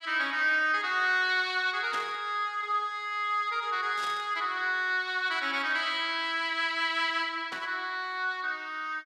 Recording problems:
burst of static; at 2 s, at 4 s and at 7.5 s; peak -7 dB vs average level

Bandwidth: 13.5 kHz